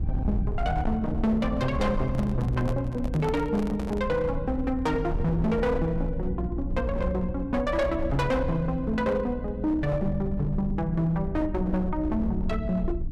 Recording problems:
distortion; hard clipping, signal-to-distortion ratio 12 dB
electrical hum; 60 Hz, harmonics up to 300 Hz, SNR 10 dB
rumble; below 80 Hz, SNR 8 dB
microphone handling noise; from 2 to 4 s; peak -5 dB vs average level

